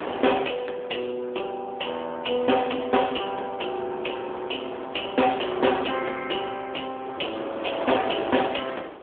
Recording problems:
telephone audio; 280 Hz to 3.5 kHz, AMR-NB
wind on the microphone; below 1.1 kHz, SNR 10 dB

